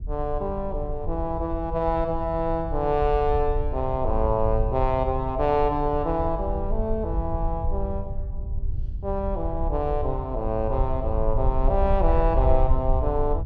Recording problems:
low-frequency rumble; below 66 Hz, SNR 4 dB

